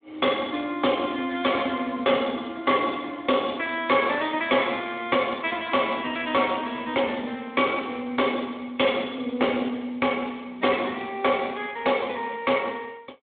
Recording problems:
phone line; 220 Hz to 3.6 kHz, Speex
distortion; hard clipping, uneven, signal-to-distortion ratio 11 dB

